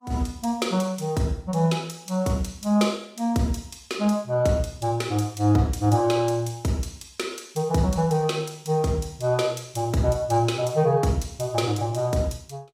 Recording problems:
lossy compression; Vorbis, log-spectral distance 3 dB, nothing above 15.1 kHz

